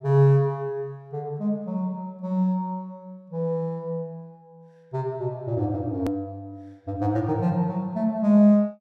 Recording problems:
hard cut with a click; at 6 s

